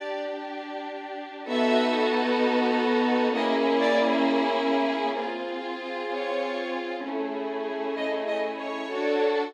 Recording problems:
none

